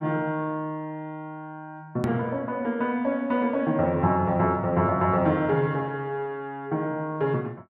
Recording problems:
edit click; at 2 s

